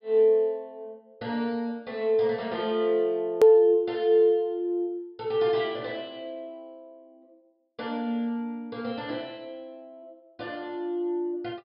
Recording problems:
treble missing; nothing above 5.5 kHz
click at an edit; at 3.5 s

